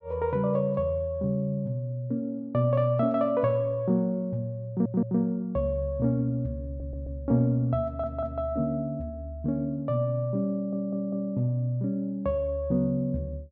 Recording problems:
stutter; 4 times, first at 4.5 s

